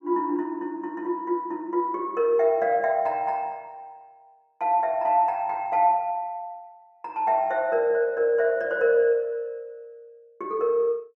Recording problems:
none

